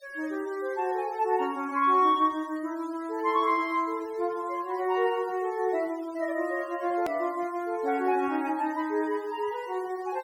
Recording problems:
denoising artefacts; signal-to-artefact ratio 24 dB
hard cut with a click; at 7 s

